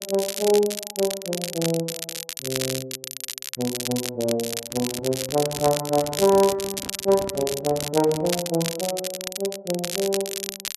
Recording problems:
crackle; vinyl, SNR 5 dB
microphone handling noise; from 4.5 to 8.5 s; peak -8 dB vs average level

